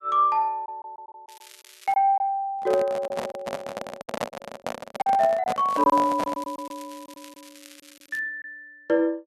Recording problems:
packet loss; 8% of the sound replaced, filled with silence
crackle; at 1.5 s and from 5.5 to 8 s; loose cable, SNR 23 dB
handling noise; from 2.5 to 6.5 s; peak 0 dB vs average level

